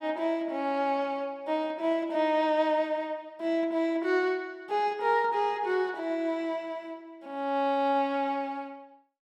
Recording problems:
none

